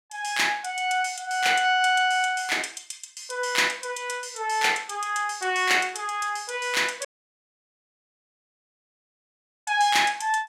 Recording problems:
dropout; at 7 s for 2.5 s

